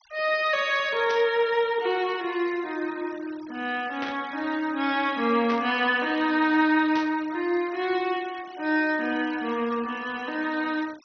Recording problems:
treble missing; nothing above 6.1 kHz
denoising artefacts; signal-to-artefact ratio 21 dB
static burst; 4 times, first at 1 s; peak -6 dB vs average level

